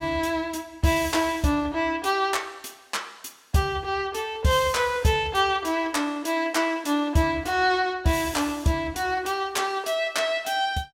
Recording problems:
none

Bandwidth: 16.5 kHz